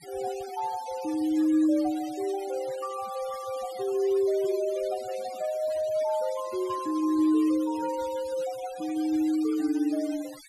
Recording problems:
noise reduction artefacts; signal-to-artefact ratio 18 dB

